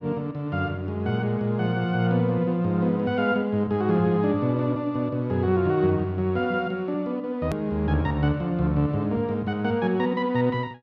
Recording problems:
edit click; at 7.5 s

